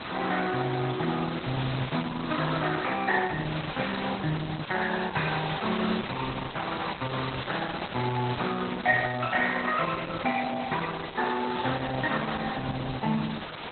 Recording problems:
codec artefacts; Opus, log-spectral distance 15 dB, nothing above 4 kHz
background hiss; SNR 7 dB

